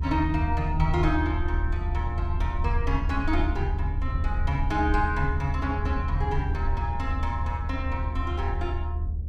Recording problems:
rumble; below 78 Hz, SNR -1 dB

